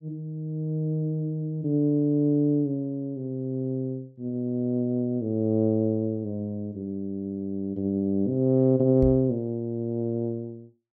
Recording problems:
microphone bump; at 9 s; peak +1 dB vs average level

